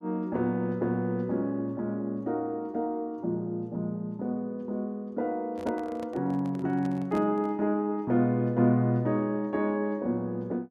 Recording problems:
microphone handling noise; from 5.5 to 7.5 s; peak -8 dB vs average level

